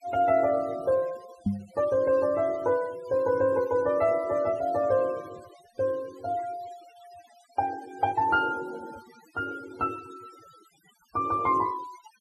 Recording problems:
noise reduction artefacts; signal-to-artefact ratio 21 dB
knock on the microphone; at 1.5 s; peak +4 dB vs average level

